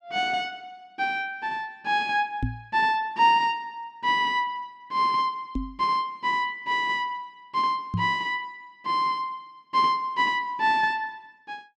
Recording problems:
microphone bump; at 2.5 s, at 5.5 s and at 8 s; peak +2 dB vs average level

